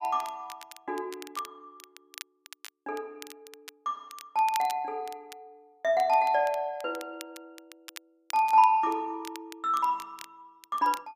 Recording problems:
crackling; vinyl, SNR 19 dB

